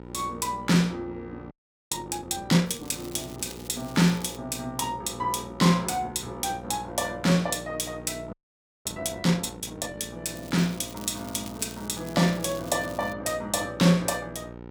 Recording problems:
mains hum; 60 Hz, harmonics up to 1.9 kHz, SNR 16 dB
frozen audio; at 1.5 s and at 8.5 s for 0.5 s
crackling; from 2.5 to 4.5 s and from 10 to 13 s; loose cable, SNR 18 dB

